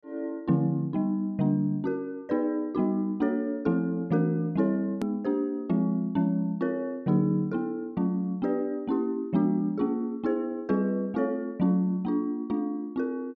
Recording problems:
hard cut with a click; at 5 s

